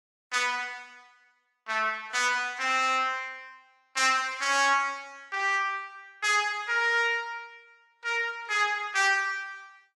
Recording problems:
codec artefacts; AAC, log-spectral distance 2 dB, nothing above 11.3 kHz

